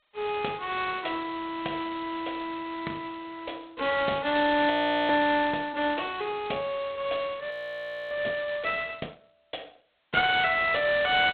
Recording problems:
telephone audio; 240 Hz to 3.9 kHz, G.726
audio freezing; at 4.5 s and at 7.5 s for 0.5 s

